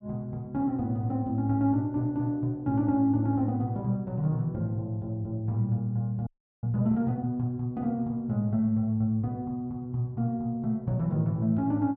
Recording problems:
audio freezing; at 6.5 s

